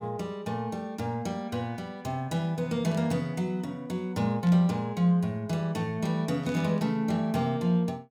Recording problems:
burst of static; at 3 s, at 4.5 s and at 6.5 s; peak -14 dB vs average level

